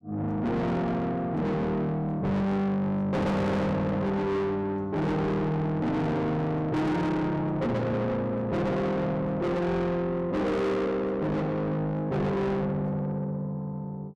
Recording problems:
distorted audio; soft clipping, signal-to-distortion ratio 6 dB

